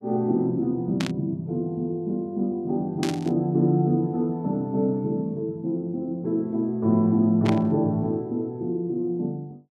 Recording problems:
static burst; at 1 s, at 3 s and at 7.5 s; peak -2 dB vs average level

